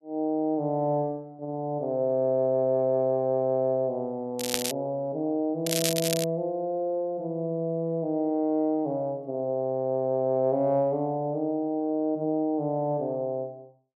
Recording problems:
crackling; at 4.5 s and at 5.5 s; loose cable, SNR 3 dB

